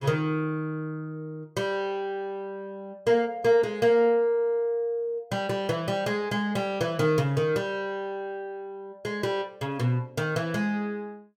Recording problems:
none

